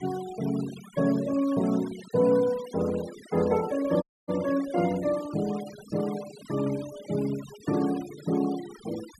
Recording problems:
denoising artefacts; signal-to-artefact ratio 17 dB
dropout; at 4 s

